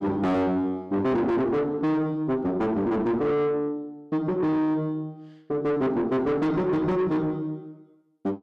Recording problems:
distorted audio; soft clipping, signal-to-distortion ratio 7 dB

